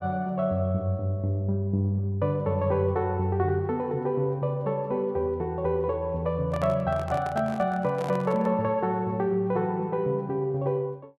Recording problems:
microphone handling noise; from 6.5 to 8.5 s; peak -6 dB vs average level

